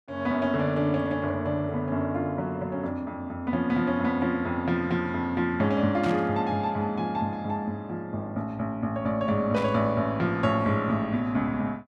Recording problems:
burst of static; at 6 s and at 9.5 s; peak -8 dB vs average level

